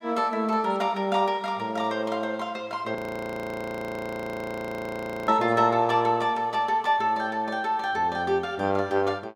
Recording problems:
frozen audio; at 3 s for 2.5 s

